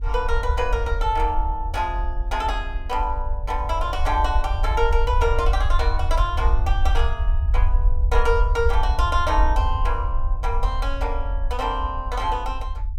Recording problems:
rumble; below 58 Hz, SNR 0 dB

